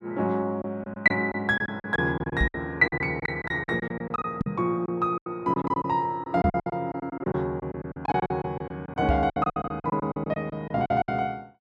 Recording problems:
packet loss; 17% of the sound replaced, filled with silence
microphone bump; 4 times, first at 2.5 s; peak +5 dB vs average level

